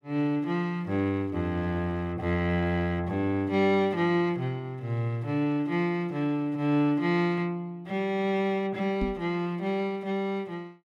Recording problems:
microphone bump; at 9 s; peak -1 dB vs average level

